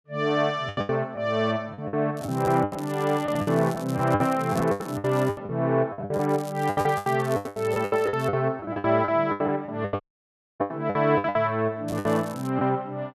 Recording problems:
packet loss; 18% of the sound replaced, filled with the last packet
crackling; from 2 to 5.5 s, from 6 to 8.5 s and at 12 s; loose cable, SNR 21 dB
dropout; at 10 s for 0.5 s

